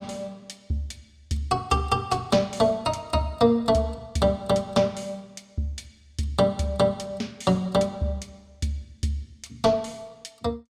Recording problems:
none

